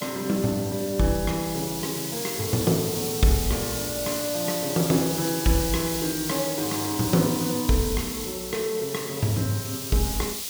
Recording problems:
hiss; SNR 4 dB

